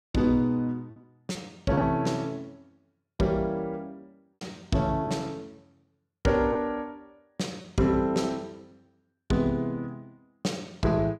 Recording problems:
lost packets; 3% of the sound replaced, filled with repeated pitch periods

